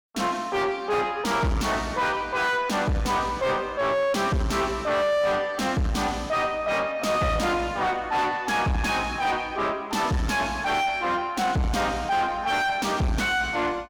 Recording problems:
distorted audio; soft clipping, signal-to-distortion ratio 5 dB

